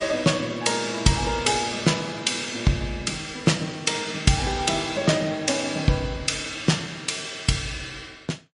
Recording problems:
lossy compression; MP3, log-spectral distance 5 dB, nothing above 10.1 kHz

